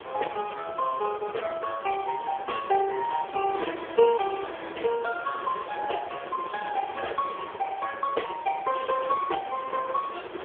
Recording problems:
phone line; 340 Hz to 3.2 kHz, AMR-NB
background hiss; SNR 11 dB

